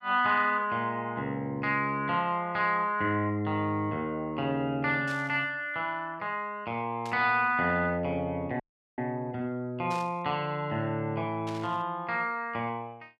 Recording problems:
burst of static; 4 times, first at 5 s; peak -10 dB vs average level
audio cutting out; at 8.5 s

